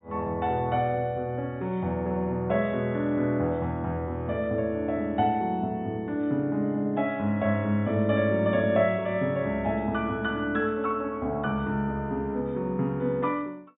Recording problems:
treble cut off; nothing above 4 kHz

